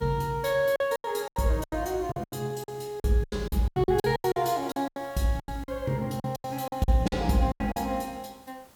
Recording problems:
background hiss; slope -4 dB per octave, SNR 27 dB
packet loss; 17% of the sound replaced, filled with silence

